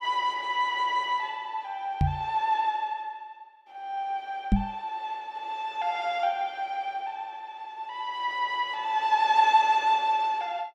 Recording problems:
microphone thump; at 2 s and at 4.5 s; peak +8 dB vs average level

